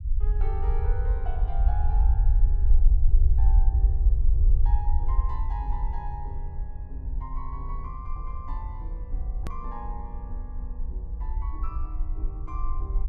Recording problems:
rumble; below 56 Hz, SNR -14 dB
edit click; at 9.5 s

